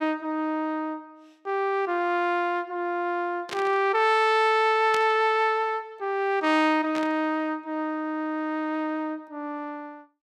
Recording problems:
burst of static; at 3.5 s, at 5 s and at 7 s; peak -4 dB vs average level

